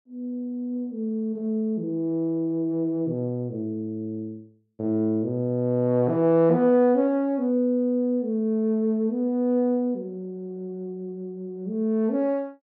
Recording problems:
none

